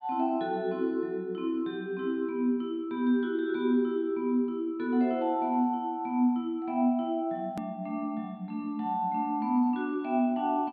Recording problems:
treble missing; nothing above 4.7 kHz
click at an edit; at 7.5 s

